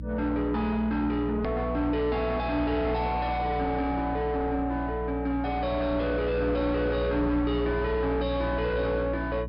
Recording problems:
treble missing; nothing above 5.5 kHz
distortion; soft clipping, signal-to-distortion ratio 6 dB
hum; 60 Hz, harmonics up to 300 Hz, SNR 8 dB
click at an edit; at 1.5 s

